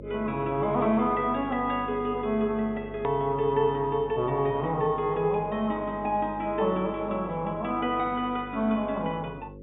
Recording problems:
low-pass filter; nothing above 4 kHz
mains hum; 50 Hz, harmonics up to 550 Hz, SNR 15 dB
hard cut with a click; at 3 s

